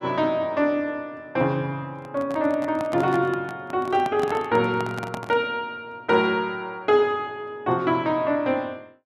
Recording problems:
handling noise; from 2 to 5.5 s; peak -3 dB vs average level

